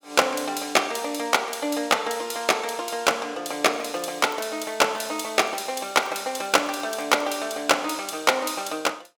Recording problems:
crackling; from 3.5 to 7.5 s; loose cable, SNR 28 dB

